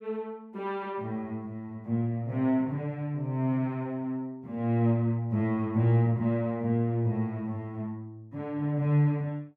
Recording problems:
none

